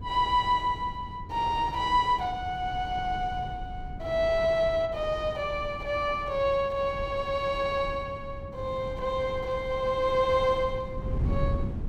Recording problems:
wind on the microphone; below 140 Hz, SNR 11 dB

